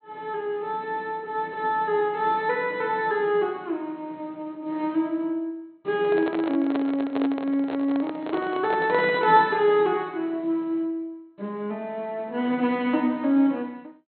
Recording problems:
treble cut off; nothing above 4.2 kHz
handling noise; from 6 to 9.5 s; peak -2 dB vs average level

